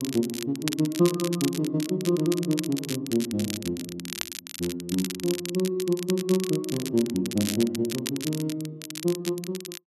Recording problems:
crackling; vinyl, SNR 8 dB

